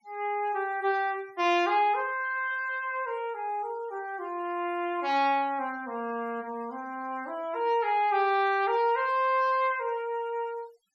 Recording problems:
denoising artefacts; signal-to-artefact ratio 25 dB

